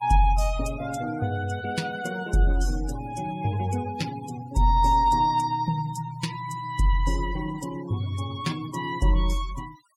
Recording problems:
noise reduction artefacts; signal-to-artefact ratio 17 dB

